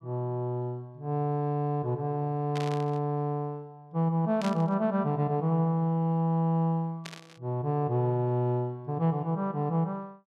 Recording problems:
burst of static; at 2.5 s, at 4.5 s and at 7 s; peak -6 dB vs average level

